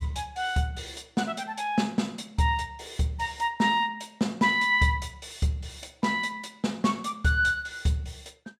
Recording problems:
none

